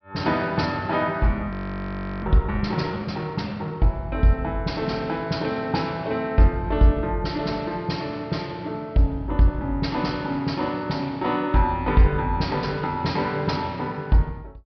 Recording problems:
treble missing; nothing above 5.5 kHz
frozen audio; at 1.5 s for 0.5 s

